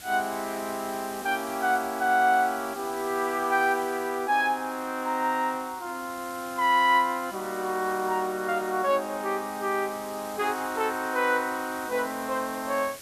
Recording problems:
background hiss; SNR 16 dB

